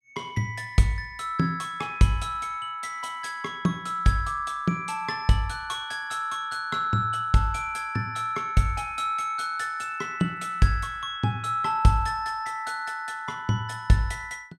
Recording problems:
none

